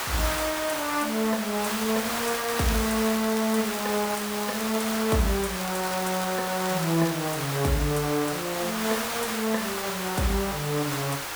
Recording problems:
hiss; SNR 3 dB
crackling; from 2.5 to 5 s and from 5.5 to 7 s; loose cable, SNR 12 dB

